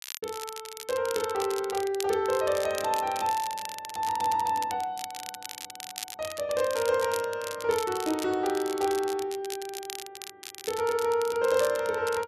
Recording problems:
crackle; vinyl, SNR 11 dB

